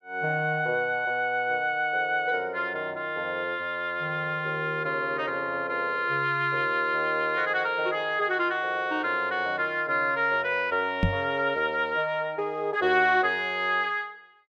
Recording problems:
microphone thump; at 11 s; peak +5 dB vs average level

